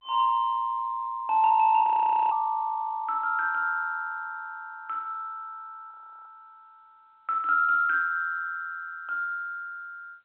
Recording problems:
telephone audio; 260 Hz to 3.8 kHz, G.711
frozen audio; at 2 s and at 6 s

